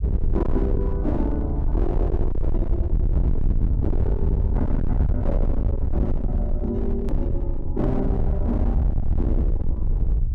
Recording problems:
distorted audio; hard clipping, signal-to-distortion ratio 6 dB
rumble; below 78 Hz, SNR -4 dB
hard cut with a click; at 7 s

